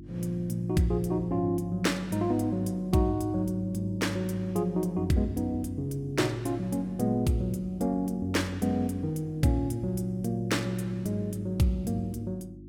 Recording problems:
electrical hum; 50 Hz, harmonics up to 350 Hz, SNR 16 dB

